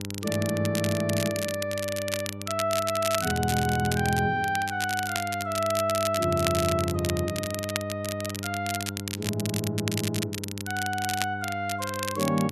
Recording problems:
electrical hum; 50 Hz, harmonics up to 1 kHz, SNR 9 dB
crackling; vinyl, SNR 6 dB

